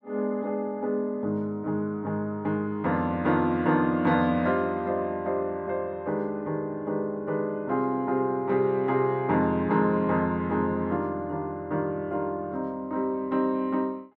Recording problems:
none

